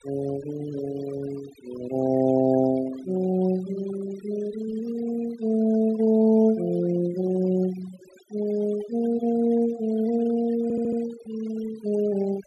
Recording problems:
noise reduction artefacts; signal-to-artefact ratio 19 dB
audio stuttering; at 11 s

